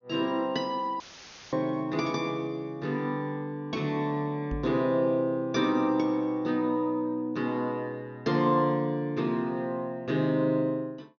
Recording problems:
treble cut off; nothing above 6.7 kHz
dropout; at 1 s for 0.5 s; filled with static
microphone bump; at 4.5 s; peak -4 dB vs average level

